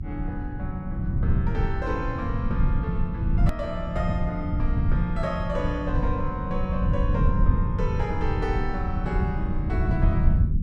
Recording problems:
hum; 50 Hz, harmonics up to 300 Hz, SNR 16 dB
rumble; below 120 Hz, SNR -4 dB
click at an edit; at 3.5 s

